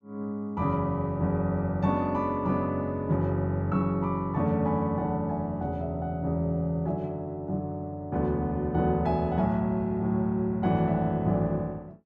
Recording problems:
none

